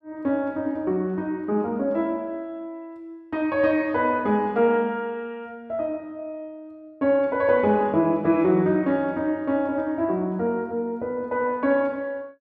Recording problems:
none

